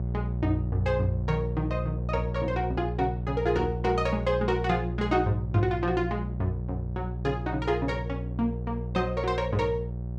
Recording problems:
hum; 60 Hz, harmonics up to 600 Hz, SNR 4 dB

